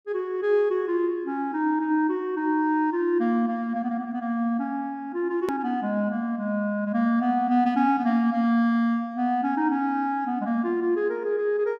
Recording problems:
click at an edit; at 5.5 s

